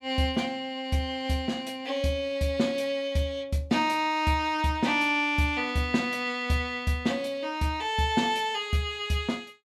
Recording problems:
none

